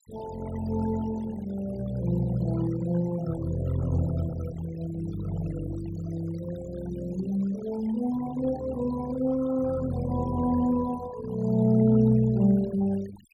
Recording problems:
denoising artefacts; signal-to-artefact ratio 17 dB

